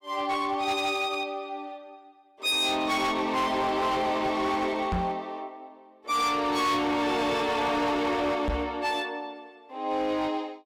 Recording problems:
distortion; hard clipping, uneven, signal-to-distortion ratio 10 dB
microphone bump; at 5 s and at 8.5 s; peak +1 dB vs average level

